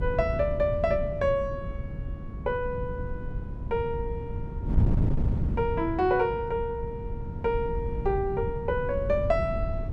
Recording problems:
wind on the microphone; below 140 Hz, SNR 4 dB

